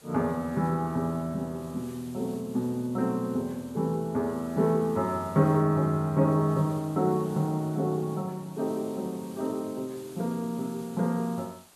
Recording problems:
hiss; slope -2 dB per octave, SNR 23 dB

